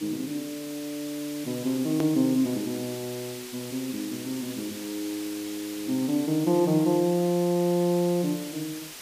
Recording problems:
background hiss; slope +1 dB per octave, SNR 12 dB
click at an edit; at 2 s

